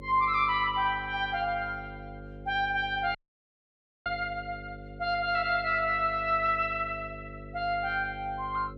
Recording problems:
hum; 50 Hz, harmonics up to 550 Hz, SNR 16 dB
audio cutting out; at 3 s for 1 s

